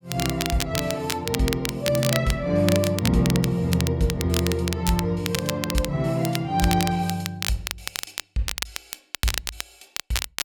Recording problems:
crackling; vinyl, SNR 6 dB

